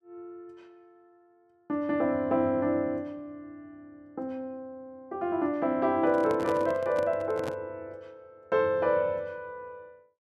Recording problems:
handling noise; from 6 to 7.5 s; peak -4 dB vs average level

